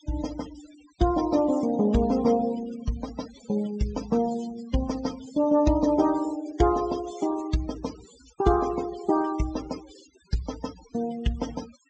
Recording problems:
low-pass filter; nothing above 8 kHz
noise reduction artefacts; signal-to-artefact ratio 16 dB

